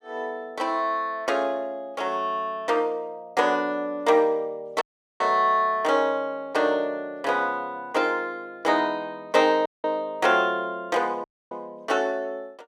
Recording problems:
dropout; at 5 s, at 9.5 s and at 11 s

